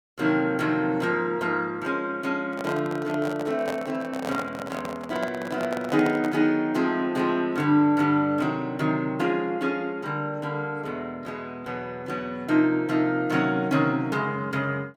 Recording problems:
microphone handling noise; from 2.5 to 6.5 s; peak -2 dB vs average level

